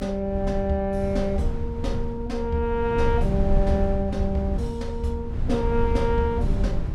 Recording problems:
low-frequency rumble; below 94 Hz, SNR 2 dB

